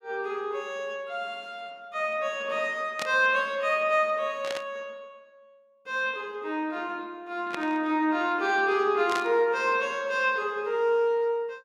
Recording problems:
burst of static; 4 times, first at 3 s; peak -2 dB vs average level

